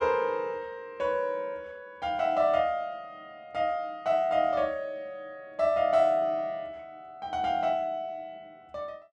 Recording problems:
none

